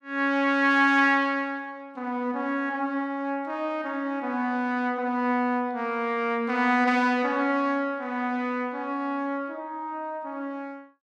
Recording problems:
none

